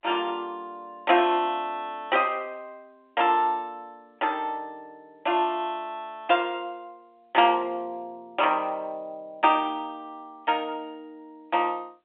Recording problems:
phone line; 170 Hz to 3.6 kHz, G.711

